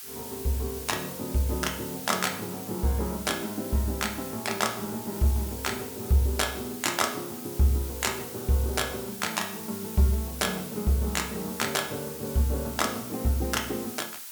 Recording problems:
background hiss; SNR 9 dB

